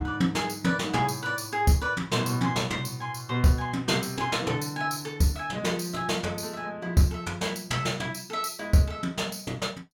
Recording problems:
none

